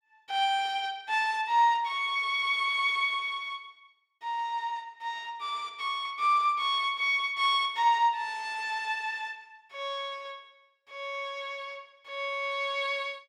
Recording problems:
none

